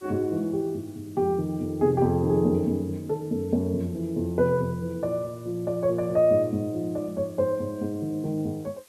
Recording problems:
hiss; slope 0 dB per octave, SNR 28 dB

